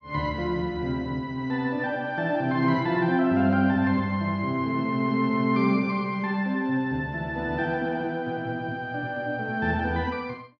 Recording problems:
none

